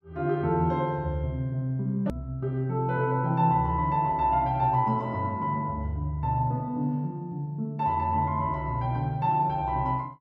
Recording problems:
edit click; at 2 s

